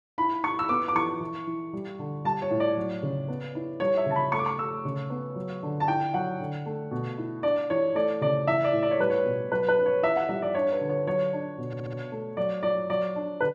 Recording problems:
audio stuttering; at 12 s

